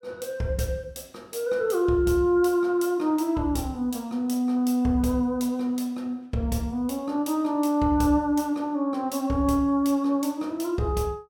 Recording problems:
none

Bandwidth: 17 kHz